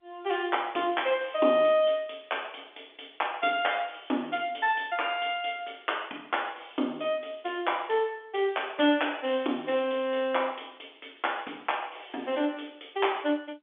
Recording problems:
telephone audio; 240 Hz to 3.5 kHz, G.711

